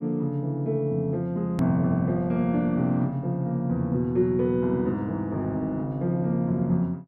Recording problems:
click at an edit; at 1.5 s

